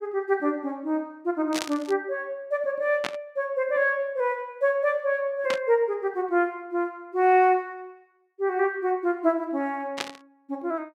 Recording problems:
burst of static; 4 times, first at 1.5 s; peak +1 dB vs average level

